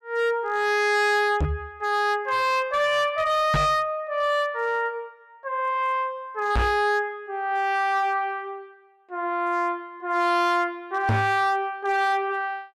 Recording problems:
distortion; hard clipping, signal-to-distortion ratio 10 dB
microphone thump; 4 times, first at 1.5 s; peak +4 dB vs average level

